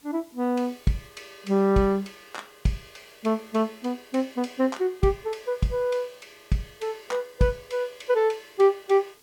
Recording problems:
hiss; slope -1 dB per octave, SNR 29 dB

